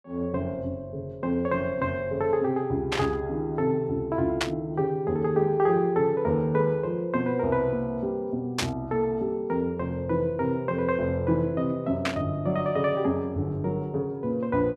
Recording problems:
static burst; 4 times, first at 3 s; peak +4 dB vs average level

